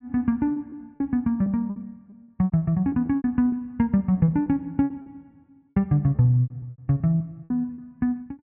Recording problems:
treble missing; nothing above 4 kHz
lost packets; 15% of the sound replaced, filled with repeated pitch periods

